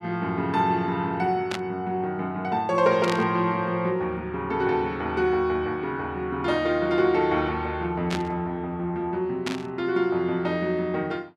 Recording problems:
static burst; 4 times, first at 1.5 s; peak -1 dB vs average level

